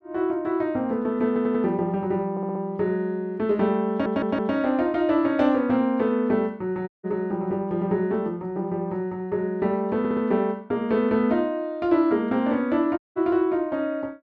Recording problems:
audio stuttering; 4 times, first at 1.5 s
audio cutting out; at 7 s and at 13 s

